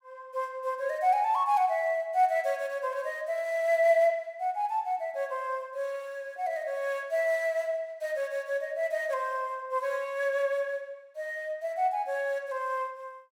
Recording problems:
none

